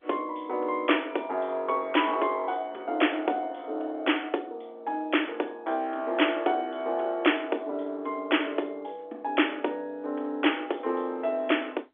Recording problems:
telephone audio; 260 Hz to 3.5 kHz, G.711

